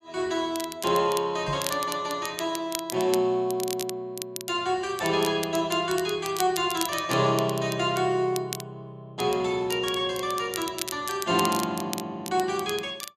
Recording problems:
crackle; vinyl, SNR 10 dB
knock on the microphone; at 1.5 s; peak -4 dB vs average level

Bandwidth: 14 kHz